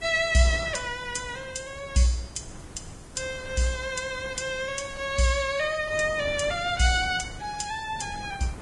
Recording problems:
lossy codec; Vorbis, log-spectral distance 6 dB
hiss; SNR 27 dB
wind noise; below 490 Hz, SNR 16 dB

